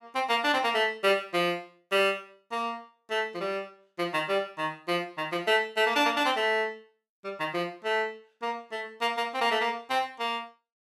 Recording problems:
none

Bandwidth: 15.5 kHz